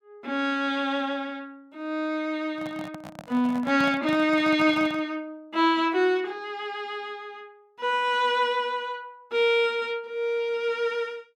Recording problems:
handling noise; from 2.5 to 5 s; peak -7 dB vs average level

